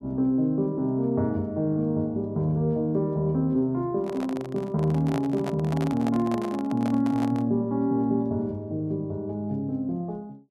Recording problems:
handling noise; from 4 to 7.5 s; peak -4 dB vs average level

